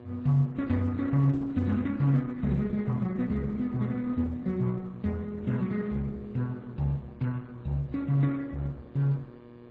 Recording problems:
lossy codec; MP3, then Opus, log-spectral distance 2 dB
electrical hum; 60 Hz, harmonics up to 2.3 kHz, SNR 20 dB

